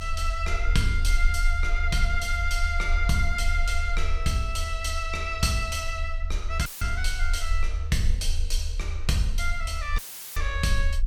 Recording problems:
rumble; below 48 Hz, strongest tone 24 Hz, SNR 2 dB
audio cutting out; at 6.5 s and at 10 s; filled with static

